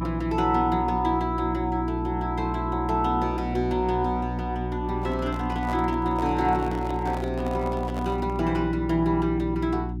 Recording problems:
hum; 60 Hz, harmonics up to 360 Hz, SNR 6 dB
microphone handling noise; from 5 to 8.5 s; peak -6 dB vs average level

